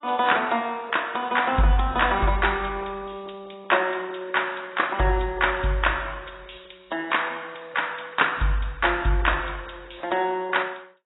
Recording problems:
codec artefacts; AAC, log-spectral distance 7 dB, nothing above 3.8 kHz

